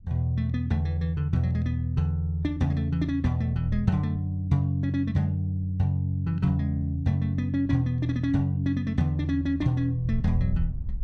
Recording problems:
wind noise; below 62 Hz, SNR 12 dB

